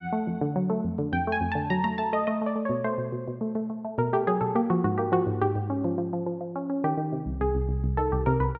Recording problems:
none

